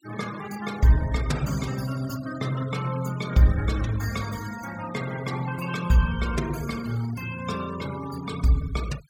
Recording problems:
denoising artefacts; signal-to-artefact ratio 16 dB

